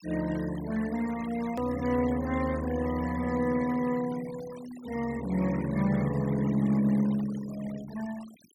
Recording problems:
denoising artefacts; signal-to-artefact ratio 18 dB
hard cut with a click; at 1.5 s

